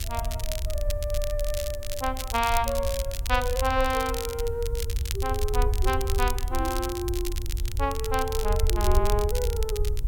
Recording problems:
hum; 60 Hz, harmonics up to 1.4 kHz, SNR 23 dB
background hiss; slope -2 dB per octave, SNR 29 dB
rumble; below 70 Hz, SNR 2 dB
crackle; vinyl, SNR 8 dB

